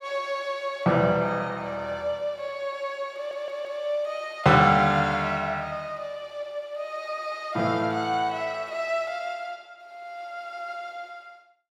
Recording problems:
stutter; at 3 s

